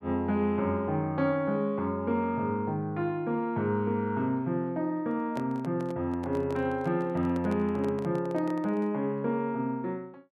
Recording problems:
microphone handling noise; from 5 to 9 s; peak -6 dB vs average level

